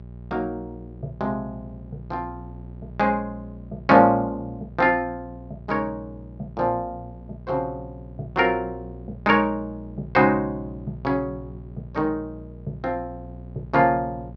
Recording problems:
hum; 60 Hz, harmonics up to 600 Hz, SNR 17 dB

